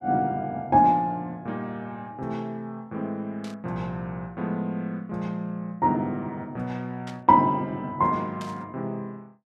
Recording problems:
burst of static; at 3.5 s, at 7 s and at 8.5 s; peak -11 dB vs average level

